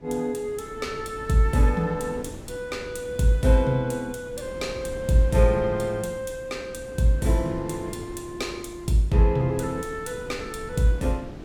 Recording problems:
wind noise; below 350 Hz, SNR 15 dB

